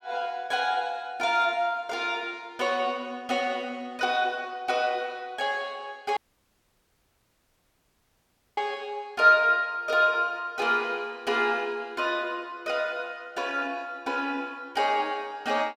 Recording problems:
dropout; at 6 s for 2.5 s

